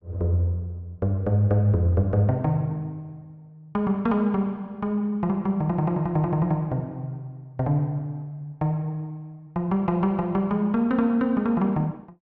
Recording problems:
none

